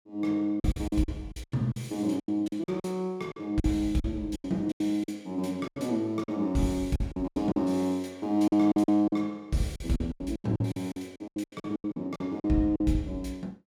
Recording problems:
lost packets; 16% of the sound replaced, filled with silence

